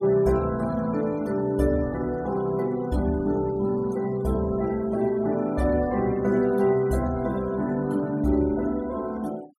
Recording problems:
denoising artefacts; signal-to-artefact ratio 23 dB

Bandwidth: 15.5 kHz